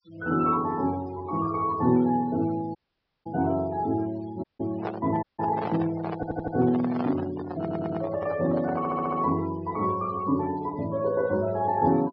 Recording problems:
low-pass filter; nothing above 5.5 kHz
noise reduction artefacts; signal-to-artefact ratio 19 dB
dropout; at 3 s for 0.5 s, at 4.5 s and at 5 s
microphone handling noise; from 4.5 to 9.5 s; peak -1 dB vs average level
stutter; at 6 s, at 7.5 s and at 9 s

